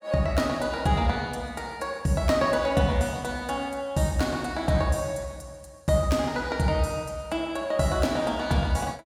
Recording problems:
none

